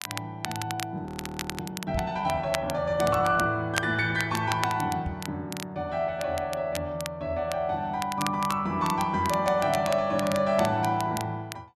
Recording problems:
crackle; vinyl, SNR 11 dB
audio freezing; at 1 s for 0.5 s
knock on the microphone; at 2 s and at 5 s; peak -2 dB vs average level

